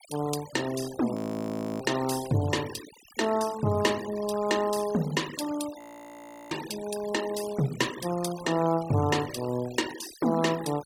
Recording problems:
noise reduction artefacts; signal-to-artefact ratio 14 dB
audio freezing; at 1 s for 0.5 s and at 6 s for 0.5 s

